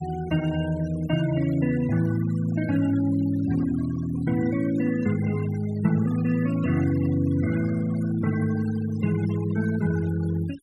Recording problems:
denoising artefacts; signal-to-artefact ratio 17 dB

